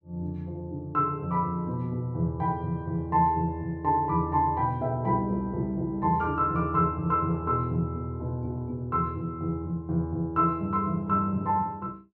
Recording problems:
none

